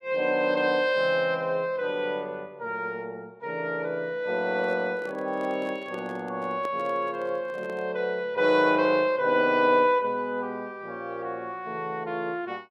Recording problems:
handling noise; from 4.5 to 8 s; peak -8 dB vs average level

